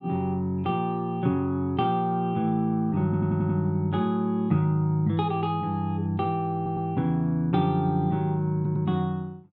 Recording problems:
audio stuttering; at 3 s, at 6.5 s and at 8.5 s

